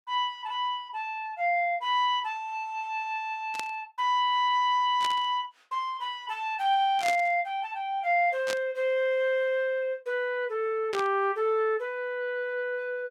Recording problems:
static burst; 5 times, first at 3.5 s; peak -2 dB vs average level

